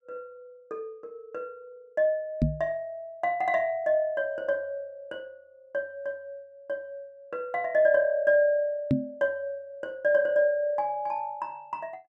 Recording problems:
microphone bump; at 2.5 s and at 9 s; peak +7 dB vs average level

